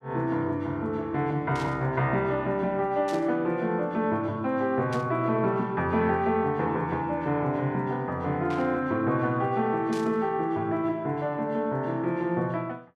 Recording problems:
static burst; 5 times, first at 1.5 s; peak -10 dB vs average level

